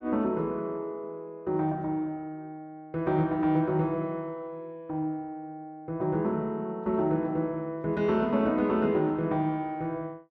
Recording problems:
none

